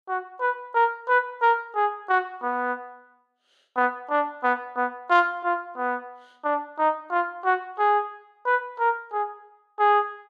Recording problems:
none

